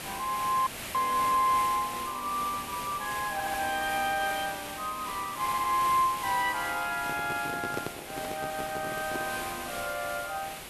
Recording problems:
background hiss; SNR 8 dB
dropout; at 0.5 s
stutter; at 3.5 s, at 5.5 s and at 8.5 s
handling noise; from 7 to 9.5 s; peak -1 dB vs average level

